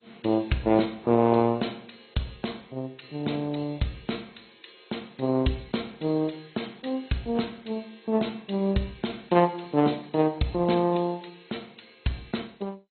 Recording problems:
lossy compression; AAC, then MP2, log-spectral distance 7 dB, nothing above 4.2 kHz

